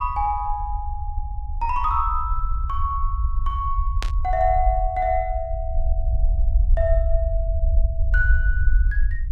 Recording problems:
rumble; below 60 Hz, SNR -1 dB
burst of static; at 4 s; peak 0 dB vs average level

